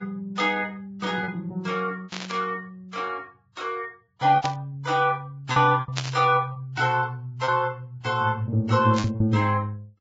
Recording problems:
lossy codec; Vorbis, log-spectral distance 2 dB, nothing above 7.3 kHz
lost packets; 6% of the sound replaced, filled with repeated pitch periods
static burst; 4 times, first at 2 s; peak +1 dB vs average level

